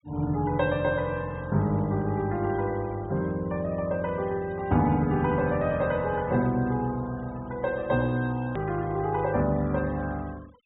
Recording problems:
treble missing; nothing above 4 kHz
denoising artefacts; signal-to-artefact ratio 25 dB
click at an edit; at 8.5 s

